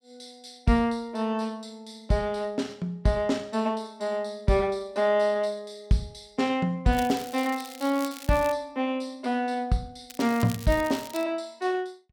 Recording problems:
crackle; from 7 to 8.5 s and from 10 to 11 s; loose cable, SNR 15 dB

